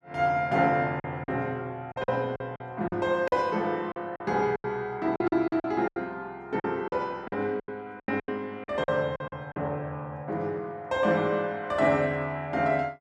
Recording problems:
lost packets; 10% of the sound replaced, filled with silence

